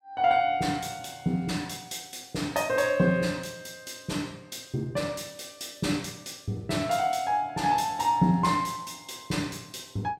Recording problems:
none

